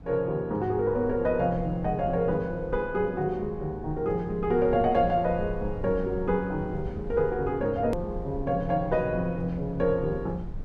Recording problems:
rumble; below 98 Hz, SNR 14 dB
hard cut with a click; at 8 s

